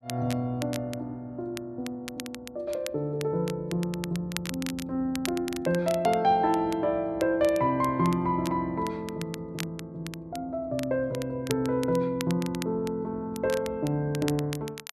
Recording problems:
crackle; vinyl, SNR 14 dB

